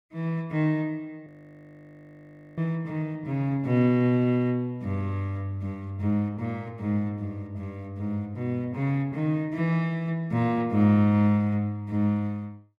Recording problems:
audio freezing; at 1.5 s for 1.5 s

